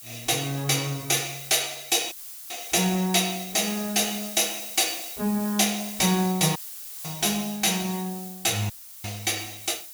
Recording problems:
background hiss; slope +4 dB per octave, SNR 12 dB
dropout; at 2 s, at 6.5 s and at 8.5 s

